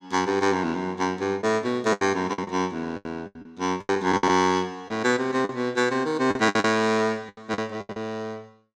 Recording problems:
lost packets; 12% of the sound replaced, filled with the last packet

